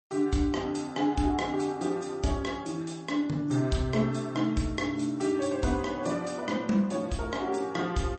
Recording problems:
codec artefacts; MP3, log-spectral distance 3 dB, nothing above 8.2 kHz

